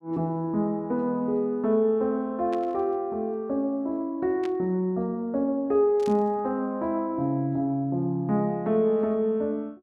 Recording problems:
burst of static; at 2.5 s, at 4.5 s and at 6 s; peak -12 dB vs average level

